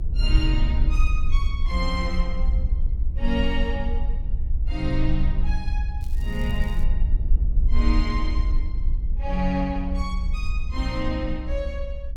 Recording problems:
rumble; below 60 Hz, strongest tone 20 Hz, SNR -4 dB
crackle; at 6 s; loose cable, SNR 22 dB

